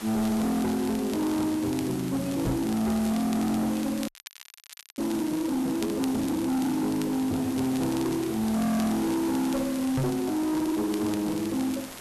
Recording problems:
distorted audio; soft clipping, signal-to-distortion ratio 8 dB
hiss; slope -3 dB per octave, SNR 13 dB
crackle; vinyl, SNR 18 dB
microphone bump; at 2.5 s and at 10 s; peak +4 dB vs average level
audio freezing; at 4 s for 1 s

